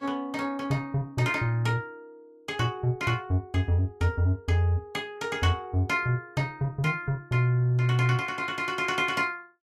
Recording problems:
lossy compression; Vorbis, log-spectral distance 2 dB, nothing above 13.8 kHz

